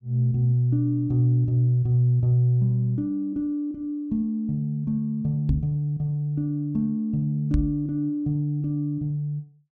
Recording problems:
knock on the microphone; at 5.5 s and at 7.5 s; peak +3 dB vs average level

